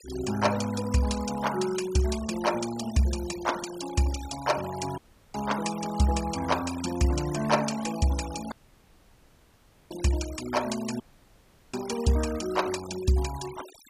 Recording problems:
noise reduction artefacts; signal-to-artefact ratio 13 dB
dropout; at 5 s, at 8.5 s for 1.5 s and at 11 s for 0.5 s

